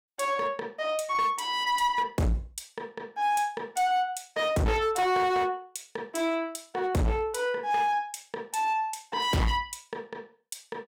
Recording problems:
distorted audio; hard clipping, signal-to-distortion ratio 7 dB

